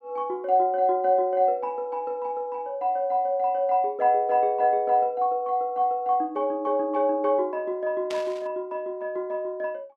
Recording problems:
burst of static; at 8 s; peak -8 dB vs average level

